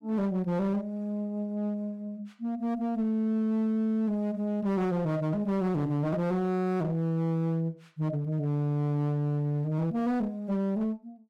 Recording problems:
distorted audio; hard clipping, uneven, signal-to-distortion ratio 11 dB

